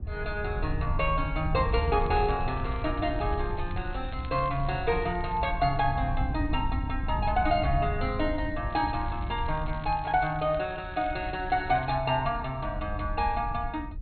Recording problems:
treble cut off; nothing above 4.2 kHz
wind on the microphone; below 90 Hz, SNR 6 dB
crackling; from 1.5 to 5.5 s and from 8.5 to 12 s; loose cable, SNR 23 dB

